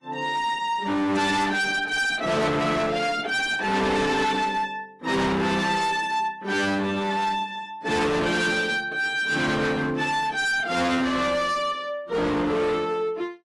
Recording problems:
lossy compression; AAC, log-spectral distance 3 dB, nothing above 11.3 kHz
distorted audio; hard clipping, signal-to-distortion ratio 6 dB

